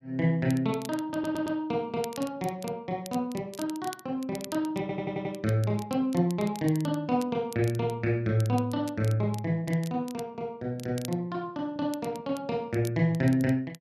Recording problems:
crackle; vinyl, SNR 18 dB
audio stuttering; at 1 s and at 5 s

